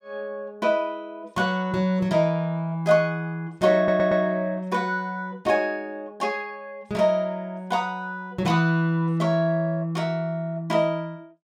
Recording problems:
stutter; at 4 s

